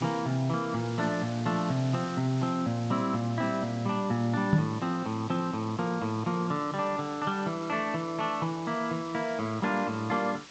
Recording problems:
lossy codec; G.722, log-spectral distance 3 dB
hiss; slope 0 dB per octave, SNR 17 dB
microphone thump; at 4.5 s; peak +8 dB vs average level

